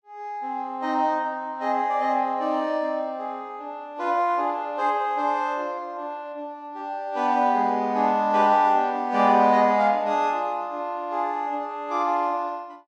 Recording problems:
none

